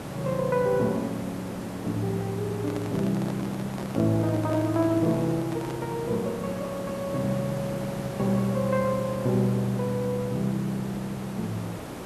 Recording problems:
hiss; slope -7 dB per octave, SNR 9 dB
handling noise; from 2.5 to 6 s; peak -6 dB vs average level

